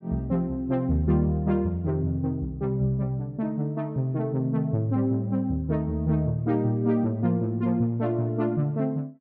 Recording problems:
none

